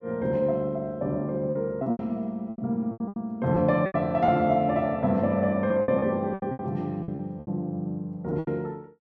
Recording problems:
packet loss; 11% of the sound replaced, filled with repeated pitch periods

